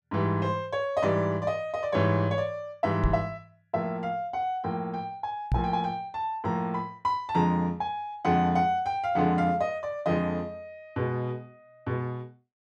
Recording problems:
knock on the microphone; at 3 s and at 5.5 s; peak +5 dB vs average level

